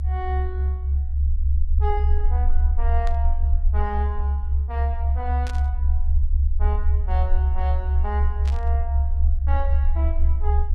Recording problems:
rumble; below 70 Hz, SNR -11 dB
burst of static; at 3 s, at 5.5 s and at 8.5 s; peak -2 dB vs average level

